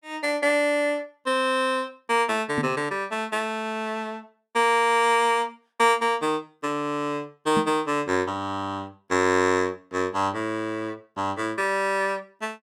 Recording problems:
microphone bump; at 2.5 s and at 7.5 s; peak +1 dB vs average level

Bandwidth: 17.5 kHz